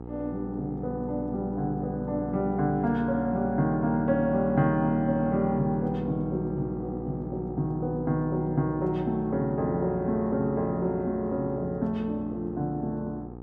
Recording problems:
hum; 60 Hz, harmonics up to 1.2 kHz, SNR 11 dB

